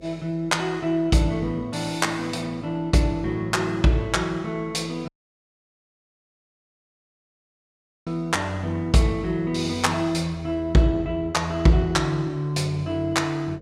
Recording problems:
hum; 50 Hz, harmonics up to 550 Hz, SNR 26 dB
dropout; at 5 s for 3 s

